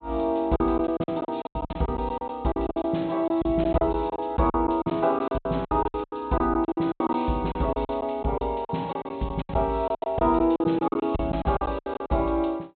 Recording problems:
treble cut off; nothing above 4 kHz
lost packets; 18% of the sound replaced, filled with silence

